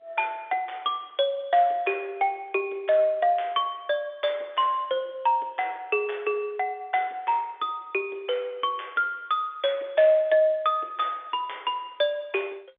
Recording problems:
telephone audio; 300 Hz to 3.6 kHz, G.711

